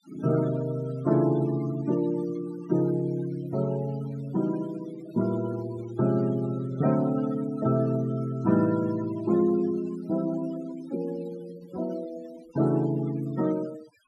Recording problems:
noise reduction artefacts; signal-to-artefact ratio 17 dB

